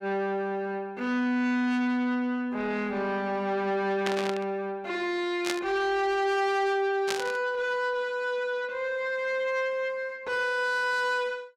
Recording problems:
distortion; soft clipping, signal-to-distortion ratio 10 dB
static burst; at 4 s, at 5.5 s and at 7 s; peak +2 dB vs average level

